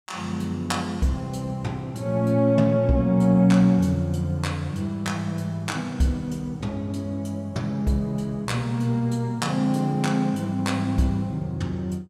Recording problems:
none

